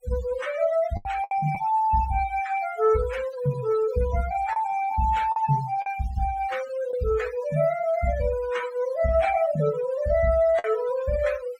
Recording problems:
noise reduction artefacts; signal-to-artefact ratio 17 dB
lost packets; 3% of the sound replaced, filled with the last packet

